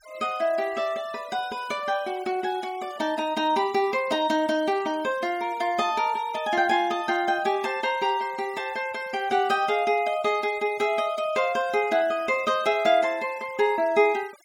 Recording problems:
denoising artefacts; signal-to-artefact ratio 22 dB

